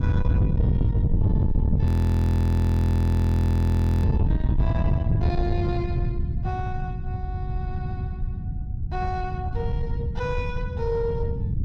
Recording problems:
distortion; soft clipping, signal-to-distortion ratio 12 dB
wind on the microphone; below 140 Hz, SNR -8 dB
audio freezing; at 2 s for 2 s

